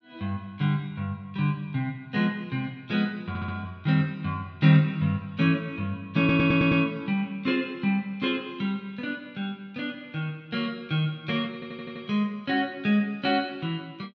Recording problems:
stutter; at 3.5 s, at 6 s and at 12 s

